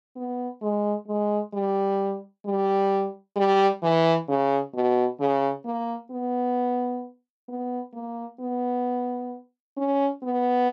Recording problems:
none

